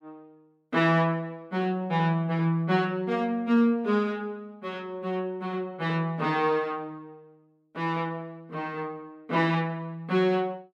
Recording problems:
none

